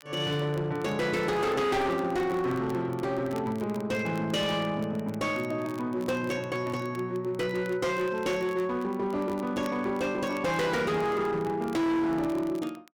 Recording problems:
distorted audio; hard clipping, signal-to-distortion ratio 7 dB
crackling; vinyl, SNR 24 dB

